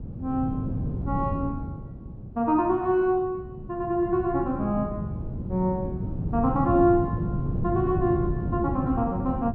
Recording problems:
wind noise; below 200 Hz, SNR 5 dB

